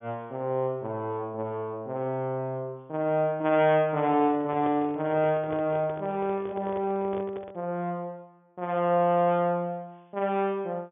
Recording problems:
treble missing; nothing above 3.5 kHz
handling noise; from 4 to 7.5 s; peak -7 dB vs average level

